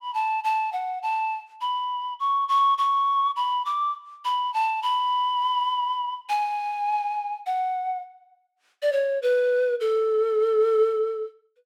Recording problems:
none

